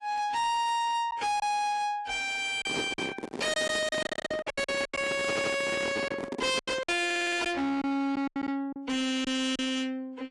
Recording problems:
lossy compression; AAC, log-spectral distance 3 dB, nothing above 10.7 kHz
distorted audio; soft clipping, signal-to-distortion ratio 6 dB
packet loss; 9% of the sound replaced, filled with silence
handling noise; from 2.5 to 7 s; peak +1 dB vs average level
stutter; at 4 s, at 5.5 s and at 7 s

